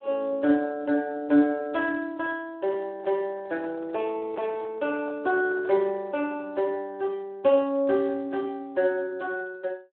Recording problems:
phone line; 240 Hz to 3.5 kHz, Speex
microphone handling noise; from 2.5 to 6 s; peak -9 dB vs average level

